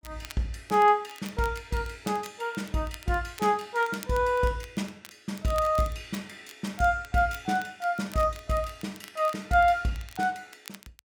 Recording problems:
crackle; vinyl, SNR 21 dB

